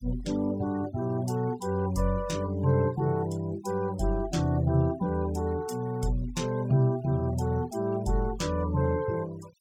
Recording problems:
denoising artefacts; signal-to-artefact ratio 22 dB

